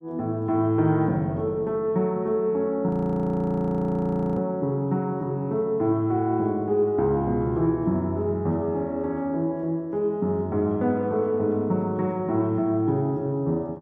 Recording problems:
frozen audio; at 3 s for 1.5 s

